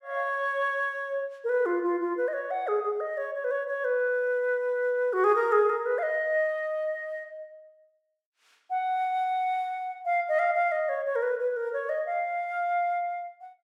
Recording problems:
none

